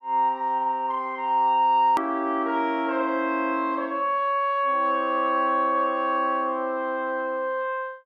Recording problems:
hard cut with a click; at 2 s

